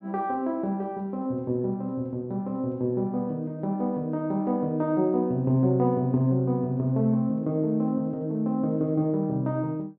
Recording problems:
none

